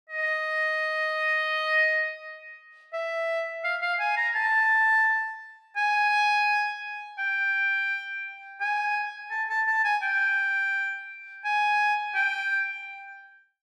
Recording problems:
none

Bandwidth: 14.5 kHz